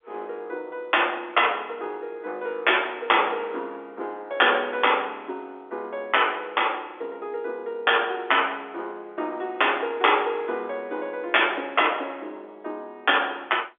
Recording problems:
phone line; 260 Hz to 3.5 kHz, G.711

